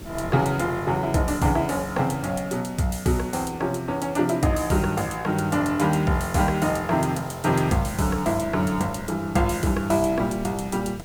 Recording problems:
hiss; slope -2 dB per octave, SNR 22 dB
wind noise; below 240 Hz, SNR 18 dB

